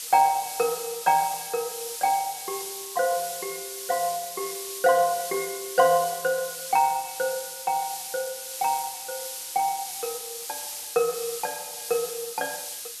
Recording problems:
hiss; slope +4 dB per octave, SNR 7 dB

